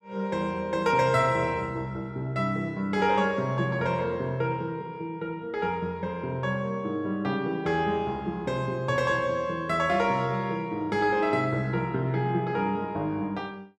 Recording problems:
none

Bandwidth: 12.5 kHz